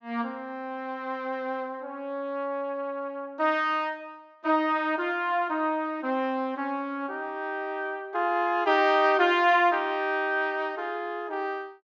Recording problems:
low-pass filter; nothing above 8 kHz

